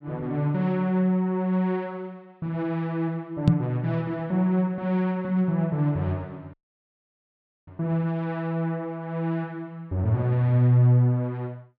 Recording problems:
microphone bump; at 3.5 s; peak +9 dB vs average level
audio cutting out; at 6.5 s for 1 s

